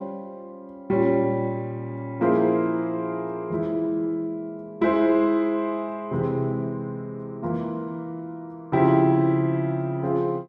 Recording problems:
none

